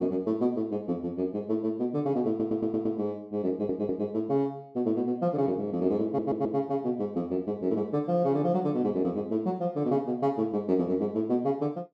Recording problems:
stutter; at 2.5 s, at 3.5 s and at 6 s

